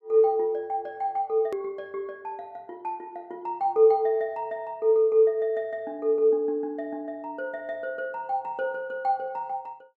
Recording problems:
edit click; at 1.5 s

